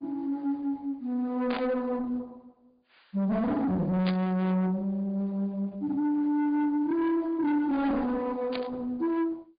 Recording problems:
treble cut off; nothing above 4.9 kHz
codec artefacts; Opus, log-spectral distance 2 dB
distorted audio; soft clipping, signal-to-distortion ratio 7 dB
burst of static; at 1.5 s, at 4 s and at 8.5 s; peak -3 dB vs average level

